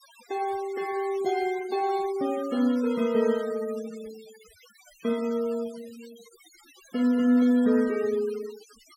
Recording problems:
noise reduction artefacts; signal-to-artefact ratio 21 dB

